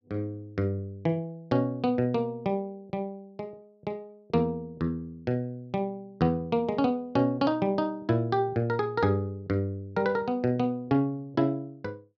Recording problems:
none

